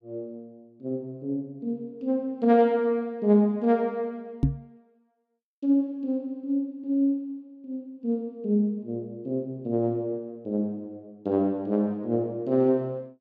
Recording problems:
knock on the microphone; at 4.5 s; peak +8 dB vs average level

